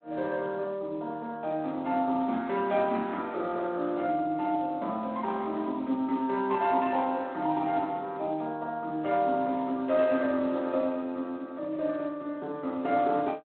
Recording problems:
phone line; 190 Hz to 3.6 kHz, Speex

